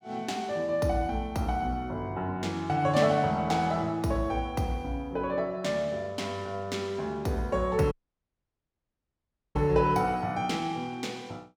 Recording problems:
audio cutting out; at 8 s for 1.5 s

